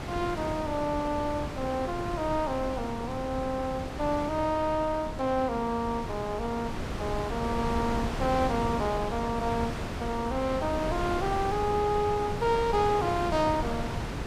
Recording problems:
wind on the microphone; below 780 Hz, SNR 5 dB

